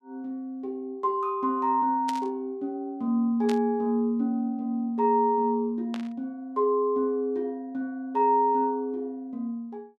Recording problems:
burst of static; at 2 s, at 3.5 s and at 6 s; peak -6 dB vs average level

